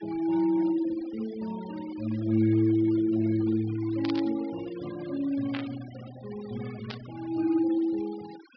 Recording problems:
low-pass filter; nothing above 5.5 kHz
noise reduction artefacts; signal-to-artefact ratio 20 dB
static burst; at 4 s, at 5.5 s and at 7 s; peak -5 dB vs average level

